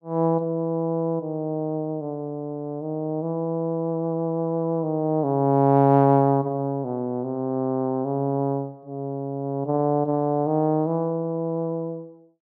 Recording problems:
none

